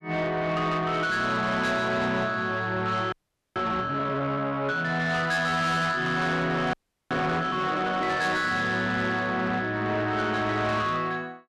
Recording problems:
distortion; soft clipping, signal-to-distortion ratio 10 dB
audio freezing; at 3 s and at 6.5 s
burst of static; at 6 s; peak -12 dB vs average level

